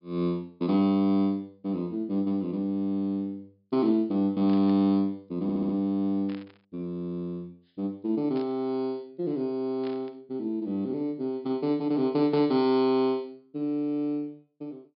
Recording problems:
treble missing; nothing above 5.5 kHz
burst of static; 5 times, first at 4.5 s; peak -15 dB vs average level
audio stuttering; at 5.5 s

